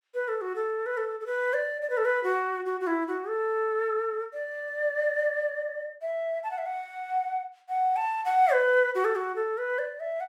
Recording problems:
none

